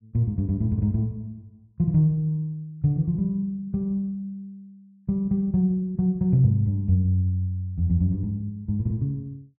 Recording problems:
none

